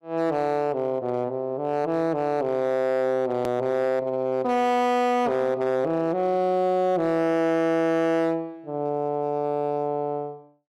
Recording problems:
distorted audio; hard clipping, signal-to-distortion ratio 11 dB
click at an edit; at 3.5 s

